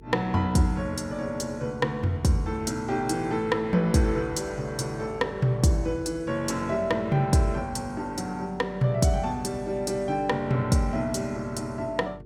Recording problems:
hum; 50 Hz, harmonics up to 450 Hz, SNR 20 dB

